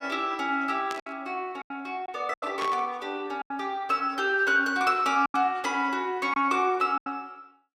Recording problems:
packet loss; 7% of the sound replaced, filled with silence
static burst; at 1 s and at 2.5 s; peak -5 dB vs average level

